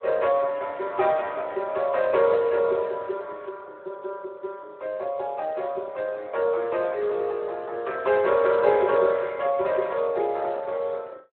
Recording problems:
telephone audio; 320 Hz to 2.8 kHz, Speex

